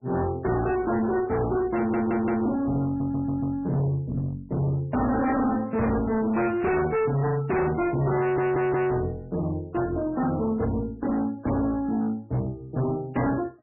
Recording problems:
lossy compression; MP3, log-spectral distance 2 dB, nothing above 2.3 kHz
distorted audio; hard clipping, signal-to-distortion ratio 6 dB
audio stuttering; at 2 s, at 3 s and at 8 s

